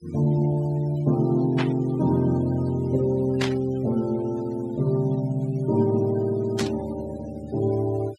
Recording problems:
noise reduction artefacts; signal-to-artefact ratio 21 dB
burst of static; at 1.5 s, at 3.5 s and at 6.5 s; peak -1 dB vs average level

